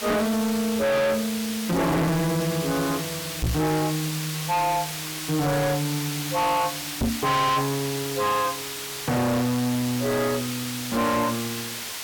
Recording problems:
distortion; hard clipping, signal-to-distortion ratio 6 dB
background hiss; slope +1 dB per octave, SNR 6 dB
microphone bump; at 3.5 s and at 7 s; peak +3 dB vs average level

